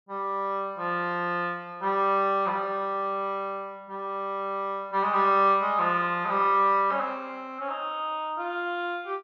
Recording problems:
treble missing; nothing above 7.5 kHz

